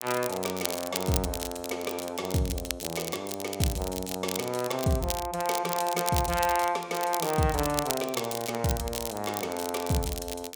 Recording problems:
crackle; vinyl, SNR 6 dB

